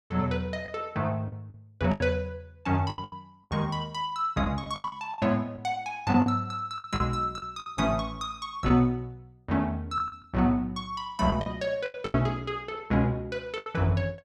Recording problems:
lost packets; 9% of the sound replaced, filled with the last packet

